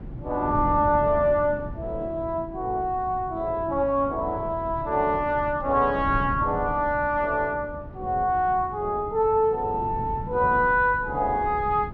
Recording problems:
wind on the microphone; below 200 Hz, SNR 13 dB

